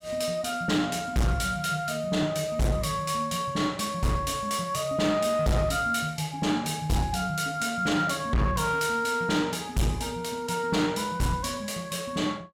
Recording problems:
distorted audio; hard clipping, uneven, signal-to-distortion ratio 8 dB

